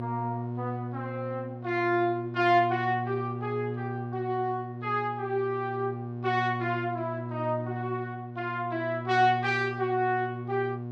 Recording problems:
hum; 60 Hz, harmonics up to 720 Hz, SNR 7 dB

